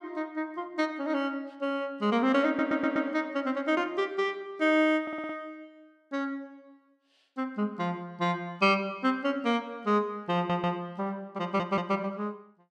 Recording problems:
audio stuttering; 4 times, first at 2.5 s

